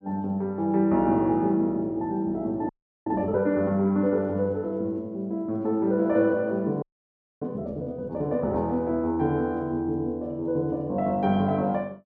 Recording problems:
audio freezing; at 2.5 s and at 7 s for 0.5 s

